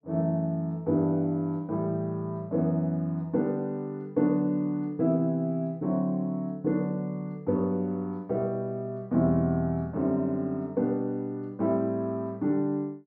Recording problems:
none

